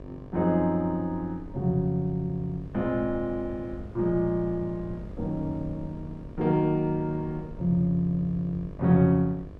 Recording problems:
electrical hum; 50 Hz, harmonics up to 1.8 kHz, SNR 21 dB
wind on the microphone; below 130 Hz, SNR 18 dB

